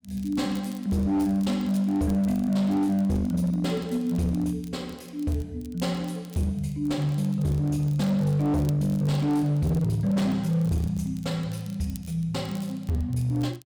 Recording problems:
distorted audio; hard clipping, signal-to-distortion ratio 11 dB
crackling; vinyl, SNR 26 dB

